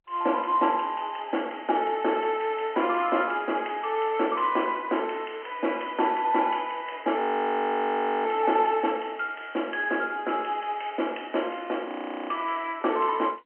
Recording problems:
phone line; 260 Hz to 3.2 kHz, G.711
audio freezing; at 7 s for 1 s and at 12 s

